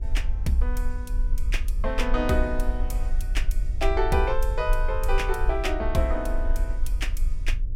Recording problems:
hum; 60 Hz, harmonics up to 600 Hz, SNR 21 dB
low-frequency rumble; below 44 Hz, strongest tone 26 Hz, SNR 0 dB

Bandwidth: 16 kHz